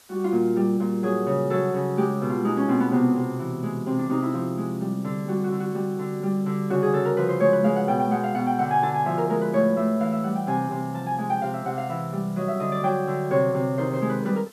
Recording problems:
hiss; slope 0 dB per octave, SNR 27 dB

